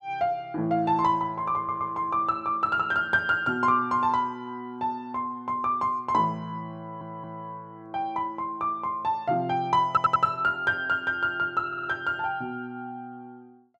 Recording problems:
audio stuttering; 4 times, first at 1.5 s

